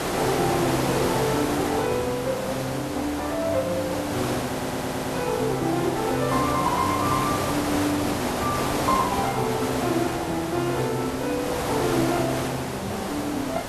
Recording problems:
background hiss; slope -6 dB per octave, SNR 2 dB
stutter; at 4.5 s

